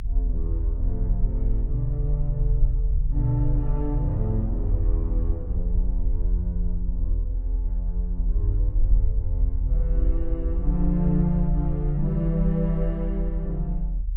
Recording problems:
rumble; below 48 Hz, strongest tone 42 Hz, SNR -2 dB

